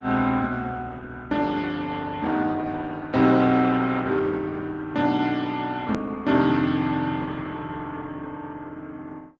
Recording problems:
treble missing; nothing above 7.3 kHz
codec artefacts; Opus, log-spectral distance 3 dB
edit click; at 6 s

